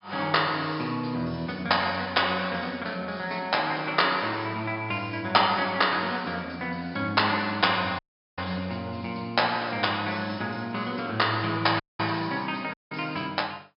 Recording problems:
low-pass filter; nothing above 5.5 kHz
audio cutting out; at 8 s, at 12 s and at 13 s

